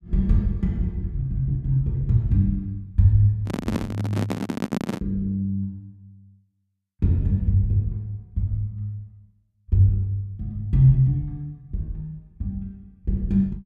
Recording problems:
handling noise; from 3.5 to 5 s; peak +2 dB vs average level

